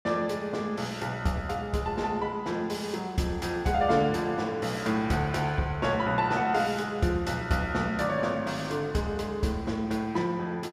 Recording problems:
none

